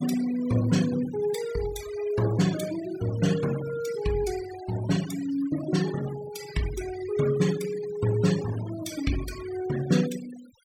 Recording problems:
noise reduction artefacts; signal-to-artefact ratio 13 dB

